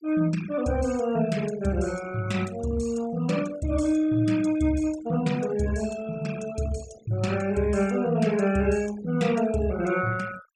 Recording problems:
noise reduction artefacts; signal-to-artefact ratio 17 dB

